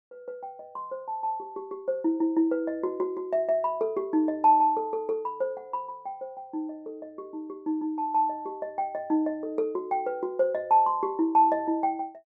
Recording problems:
none

